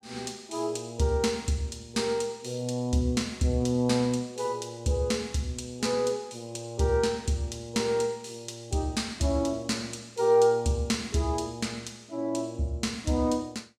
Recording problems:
none

